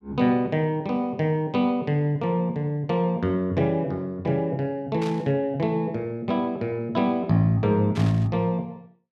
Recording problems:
static burst; at 5 s and at 8 s; peak -9 dB vs average level

